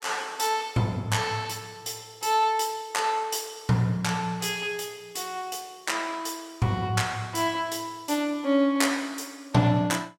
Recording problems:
none

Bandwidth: 16.5 kHz